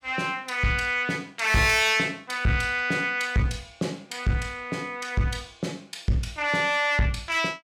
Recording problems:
distortion; soft clipping, signal-to-distortion ratio 10 dB

